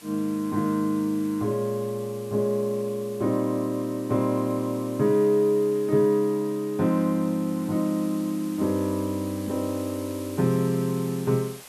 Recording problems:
background hiss; slope -1 dB per octave, SNR 20 dB

